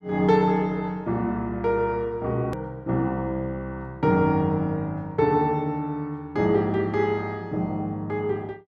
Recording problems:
edit click; at 2.5 s

